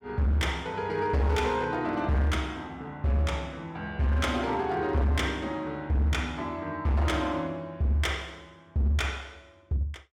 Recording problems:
distortion; hard clipping, signal-to-distortion ratio 10 dB

